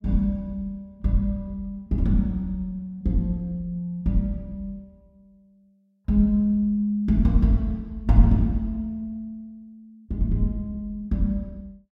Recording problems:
none

